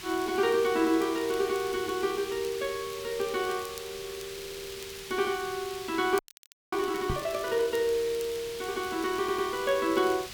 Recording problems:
hiss; SNR 11 dB
crackle; vinyl, SNR 22 dB
stutter; at 4.5 s and at 9 s
audio freezing; at 6 s for 0.5 s
microphone bump; at 7 s; peak 0 dB vs average level

